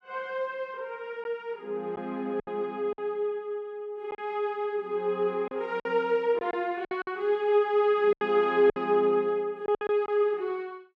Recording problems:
lost packets; 6% of the sound replaced, filled with silence

